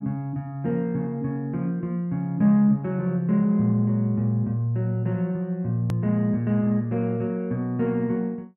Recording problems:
click at an edit; at 6 s

